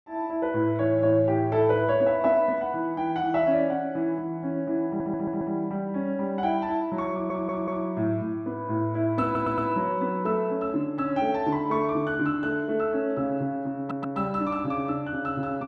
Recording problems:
audio stuttering; 4 times, first at 5 s

